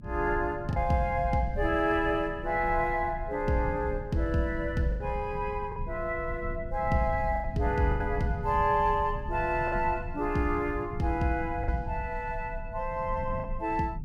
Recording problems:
rumble; below 120 Hz, SNR 10 dB
packet loss; 3% of the sound replaced, filled with the last packet

